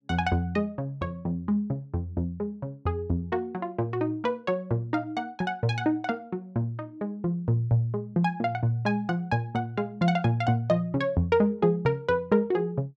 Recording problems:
none

